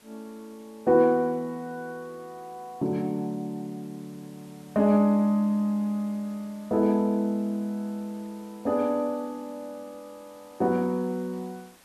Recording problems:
hiss; slope -2 dB per octave, SNR 28 dB

